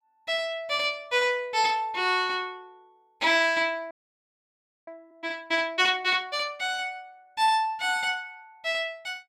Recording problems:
frozen audio; at 4 s for 1 s

